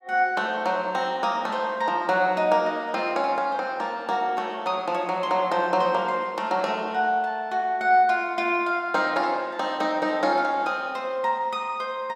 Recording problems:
none

